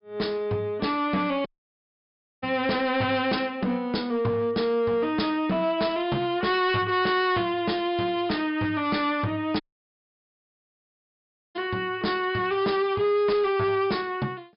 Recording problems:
treble cut off; nothing above 5.5 kHz
distortion; hard clipping, signal-to-distortion ratio 11 dB
audio cutting out; at 1.5 s for 1 s and at 9.5 s for 2 s

